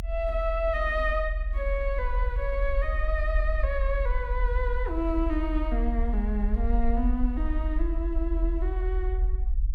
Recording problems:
rumble; below 50 Hz, strongest tone 42 Hz, SNR -1 dB

